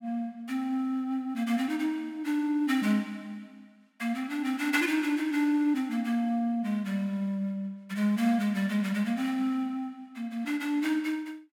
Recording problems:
none

